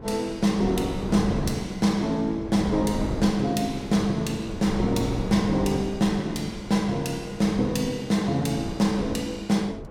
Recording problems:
wind noise; below 380 Hz, SNR 9 dB

